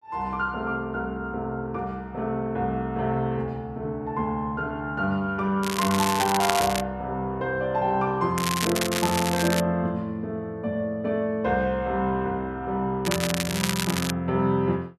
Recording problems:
crackling; from 5.5 to 7 s, from 8.5 to 9.5 s and from 13 to 14 s; loose cable, SNR 3 dB

